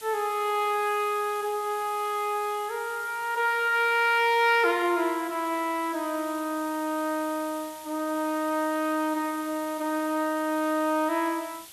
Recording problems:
hiss; SNR 17 dB

